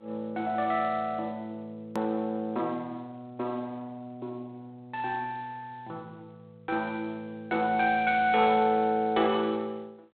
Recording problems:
telephone audio; 240 Hz to 3.7 kHz, G.726
click at an edit; at 2 s

